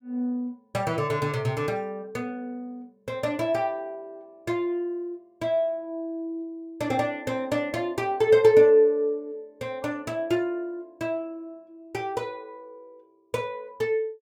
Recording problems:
none

